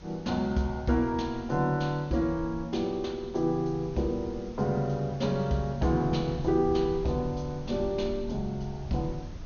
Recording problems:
low-pass filter; nothing above 6.6 kHz
background hiss; SNR 25 dB
wind on the microphone; below 120 Hz, SNR 15 dB

